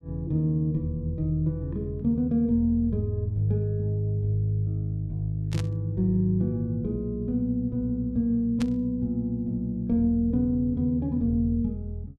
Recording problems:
burst of static; at 5.5 s and at 8.5 s; peak -7 dB vs average level

